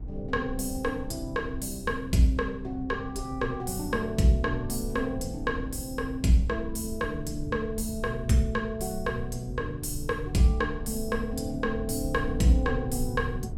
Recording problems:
rumble; below 96 Hz, SNR 10 dB

